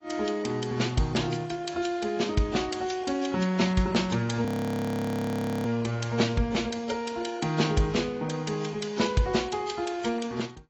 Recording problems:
lossy codec; AAC, log-spectral distance 4 dB, nothing above 18.9 kHz
frozen audio; at 4.5 s for 1 s

